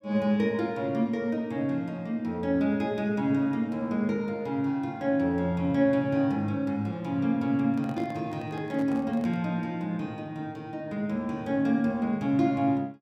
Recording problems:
handling noise; from 7.5 to 9.5 s; peak -11 dB vs average level

